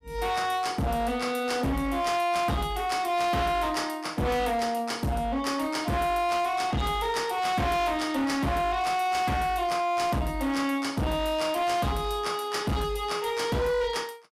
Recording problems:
distorted audio; hard clipping, signal-to-distortion ratio 8 dB

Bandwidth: 15.5 kHz